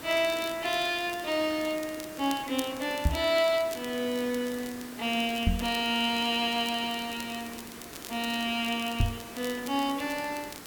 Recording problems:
background hiss; slope -4 dB per octave, SNR 14 dB
crackling; vinyl, SNR 17 dB
knock on the microphone; at 3 s, at 5.5 s and at 9 s; peak +7 dB vs average level

